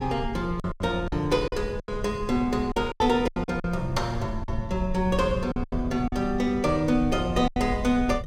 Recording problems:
rumble; below 100 Hz, SNR 10 dB
lost packets; 10% of the sound replaced, filled with silence

